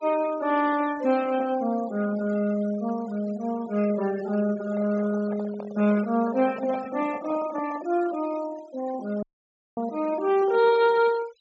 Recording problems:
treble cut off; nothing above 8 kHz
noise reduction artefacts; signal-to-artefact ratio 18 dB
handling noise; from 4.5 to 8 s; peak -9 dB vs average level
audio cutting out; at 9 s for 0.5 s

